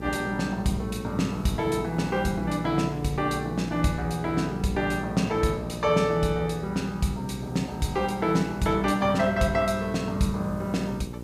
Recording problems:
hum; 60 Hz, harmonics up to 960 Hz, SNR 11 dB
background hiss; slope -4 dB per octave, SNR 27 dB

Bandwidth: 15 kHz